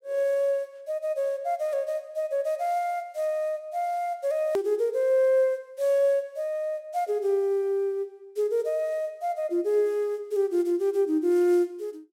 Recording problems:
edit click; at 4.5 s

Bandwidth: 16 kHz